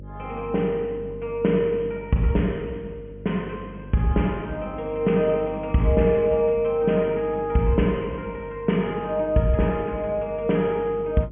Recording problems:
treble missing; nothing above 3.2 kHz
hum; 50 Hz, harmonics up to 600 Hz, SNR 18 dB

